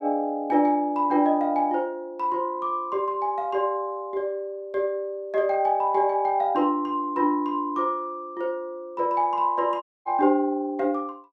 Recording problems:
audio cutting out; at 10 s

